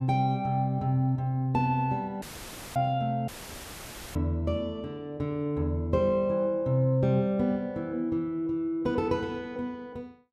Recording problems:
audio cutting out; at 2 s for 0.5 s and at 3.5 s for 1 s; filled with static

